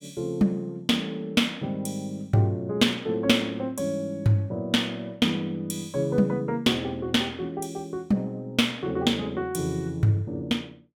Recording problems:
none

